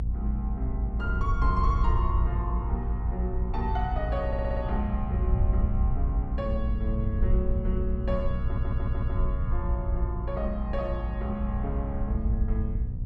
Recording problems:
electrical hum; 60 Hz, harmonics up to 540 Hz, SNR 4 dB
rumble; below 72 Hz, SNR -4 dB
audio stuttering; at 4.5 s and at 8.5 s

